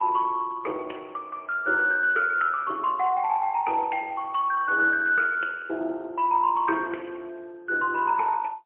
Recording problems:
telephone audio; 300 Hz to 3.1 kHz, AMR-NB, then MP3

